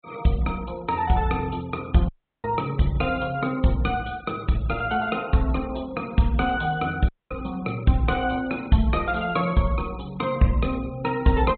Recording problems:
treble cut off; nothing above 4 kHz
noise reduction artefacts; signal-to-artefact ratio 23 dB
dropout; at 2 s and at 7 s

